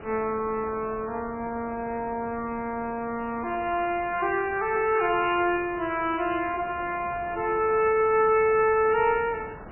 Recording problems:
lossy compression; MP3, log-spectral distance 3 dB, nothing above 2.4 kHz
wind on the microphone; below 1.1 kHz, SNR 19 dB

